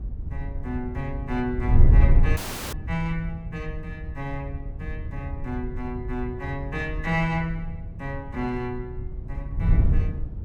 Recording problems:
wind on the microphone; below 88 Hz, SNR -3 dB
audio cutting out; at 2.5 s

